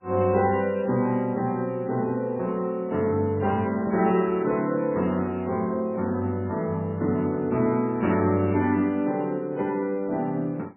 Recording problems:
codec artefacts; MP3, log-spectral distance 2 dB, nothing above 2.8 kHz
microphone handling noise; from 3.5 to 5.5 s; peak -7 dB vs average level

